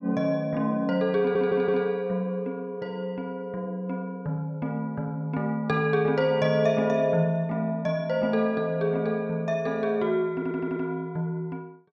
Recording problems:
audio stuttering; at 1 s and at 10 s

